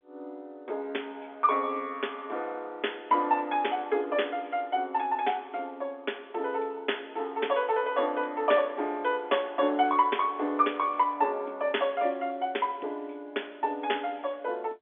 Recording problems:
telephone audio; 260 Hz to 3.5 kHz, G.711

